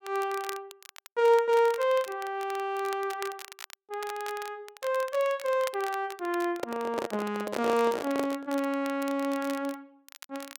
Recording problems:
crackling; vinyl, SNR 17 dB
handling noise; from 6.5 to 8.5 s; peak 0 dB vs average level

